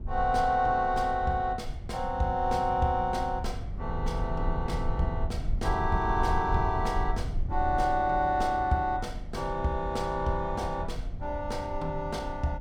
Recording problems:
rumble; below 82 Hz, SNR 7 dB

